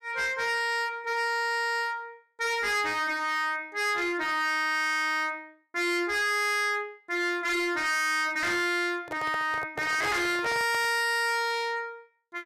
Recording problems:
distorted audio; hard clipping, uneven, signal-to-distortion ratio 7 dB
microphone handling noise; from 9 to 11 s; peak -6 dB vs average level

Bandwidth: 15 kHz